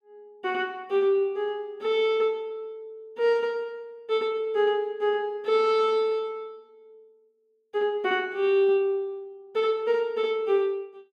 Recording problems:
none

